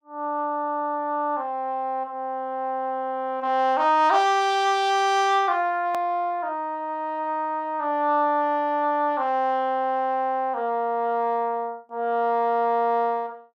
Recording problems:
click at an edit; at 6 s

